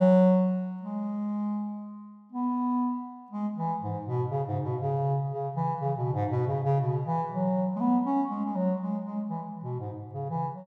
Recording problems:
none

